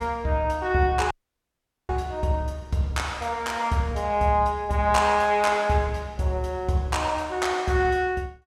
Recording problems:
audio cutting out; at 1 s for 1 s

